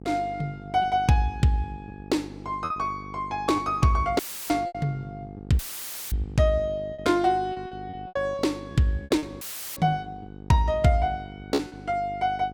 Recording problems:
mains hum; 50 Hz, harmonics up to 900 Hz, SNR 16 dB
lost packets; 7% of the sound replaced, filled with repeated pitch periods
audio cutting out; at 4 s, at 5.5 s for 0.5 s and at 9.5 s; filled with static

